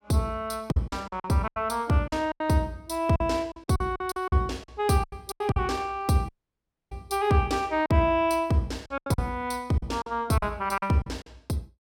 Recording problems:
lost packets; 12% of the sound replaced, filled with silence
dropout; at 6.5 s for 0.5 s

